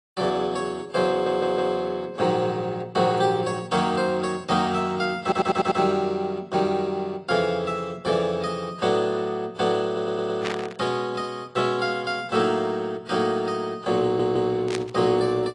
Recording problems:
lossy codec; AAC, log-spectral distance 2 dB
stutter; 4 times, first at 1 s
static burst; at 10 s and at 15 s; peak -2 dB vs average level

